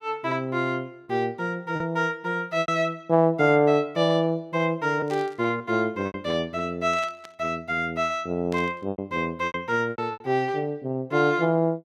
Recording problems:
lost packets; 5% of the sound replaced, filled with repeated pitch periods
static burst; at 5 s, at 7 s and at 8.5 s; peak -12 dB vs average level

